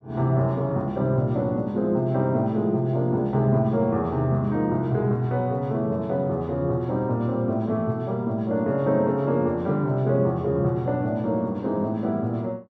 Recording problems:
none

